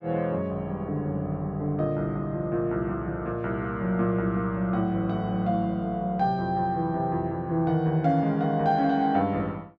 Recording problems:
none

